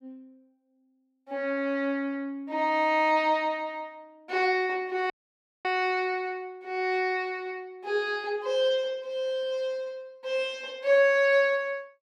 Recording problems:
dropout; at 5 s for 0.5 s

